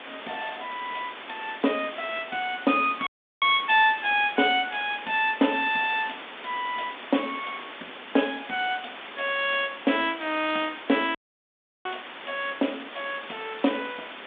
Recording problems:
telephone audio; 190 Hz to 3.6 kHz, G.726
hiss; SNR 13 dB
dropout; at 3 s and at 11 s for 0.5 s

